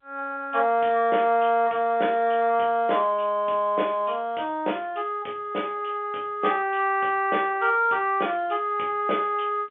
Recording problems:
phone line; 280 Hz to 3.5 kHz, G.711

